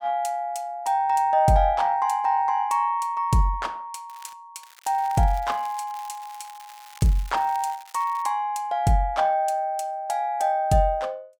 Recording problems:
crackle; at 4 s and from 4.5 to 8 s; loose cable, SNR 24 dB

